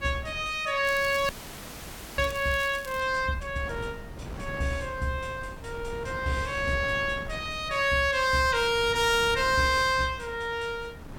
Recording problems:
background hiss; SNR 29 dB
wind on the microphone; below 360 Hz, SNR 16 dB
crackle; from 1 to 3 s; loose cable, SNR 19 dB
frozen audio; at 1.5 s for 1 s

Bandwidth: 17 kHz